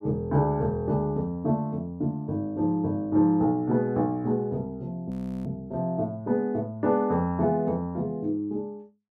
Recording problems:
audio freezing; at 5 s

